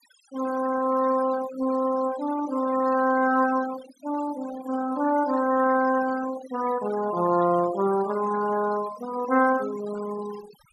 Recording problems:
denoising artefacts; signal-to-artefact ratio 16 dB

